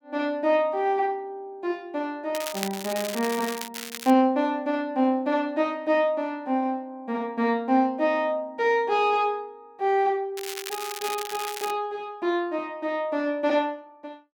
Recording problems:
crackle; from 2.5 to 4 s and from 10 to 12 s; loose cable, SNR 9 dB

